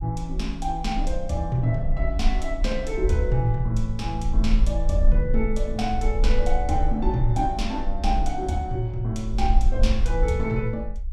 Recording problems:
rumble; below 46 Hz, SNR 1 dB

